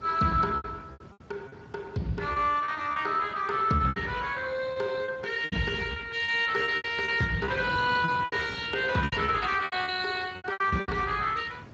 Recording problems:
lossy compression; Speex, log-spectral distance 4 dB
wind noise; below 480 Hz, SNR 18 dB
lost packets; 13% of the sound replaced, filled with repeated pitch periods

